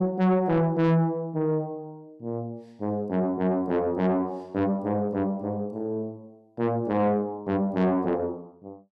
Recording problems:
distorted audio; soft clipping, signal-to-distortion ratio 8 dB

